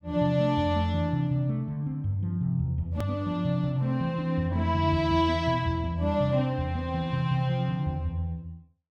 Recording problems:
hard cut with a click; at 3 s

